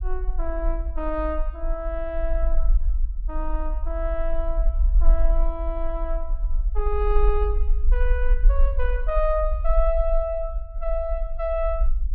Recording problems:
rumble; below 44 Hz, SNR -2 dB

